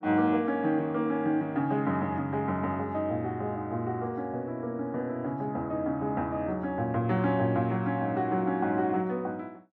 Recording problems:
none

